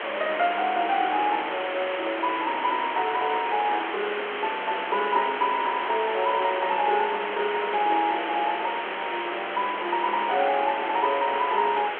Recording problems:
telephone audio; 280 Hz to 3.3 kHz, G.726
hiss; SNR 5 dB

